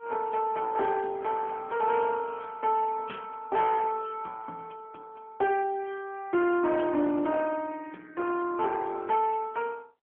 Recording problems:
phone line; 190 Hz to 3.5 kHz, AMR-NB
distortion; soft clipping, signal-to-distortion ratio 12 dB

